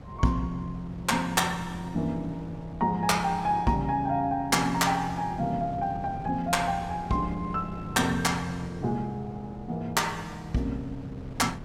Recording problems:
wind noise; below 260 Hz, SNR 15 dB

